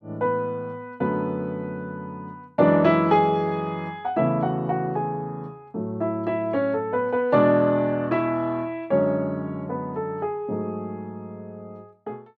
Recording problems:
none

